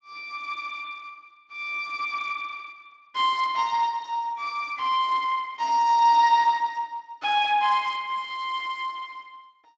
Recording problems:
codec artefacts; Speex, log-spectral distance 3 dB, nothing above 7.3 kHz

